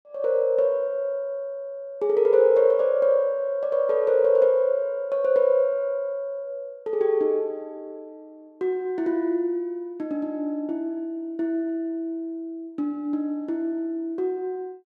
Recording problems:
none

